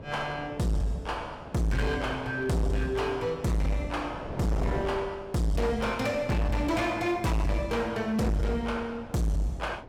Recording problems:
distortion; hard clipping, signal-to-distortion ratio 7 dB
wind noise; below 640 Hz, SNR 13 dB

